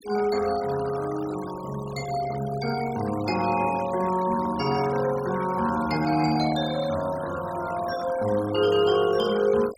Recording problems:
noise reduction artefacts; signal-to-artefact ratio 16 dB

